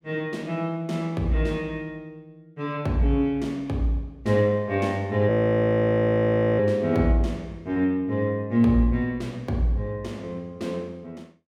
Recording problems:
audio freezing; at 5.5 s for 1.5 s

